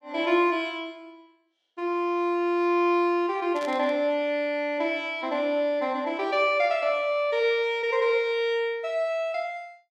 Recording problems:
static burst; at 3.5 s; peak -12 dB vs average level

